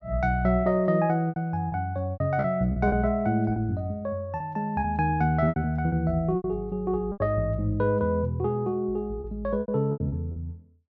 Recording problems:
packet loss; 9% of the sound replaced, filled with repeated pitch periods

